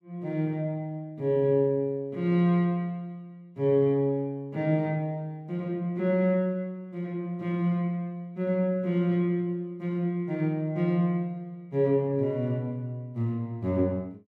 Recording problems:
none

